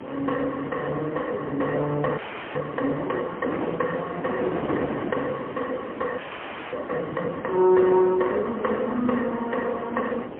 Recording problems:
telephone audio; 220 Hz to 2.4 kHz, AMR-NB, then MP3
background hiss; SNR 27 dB
wind on the microphone; below 620 Hz, SNR 9 dB
audio freezing; at 2 s and at 6 s for 0.5 s

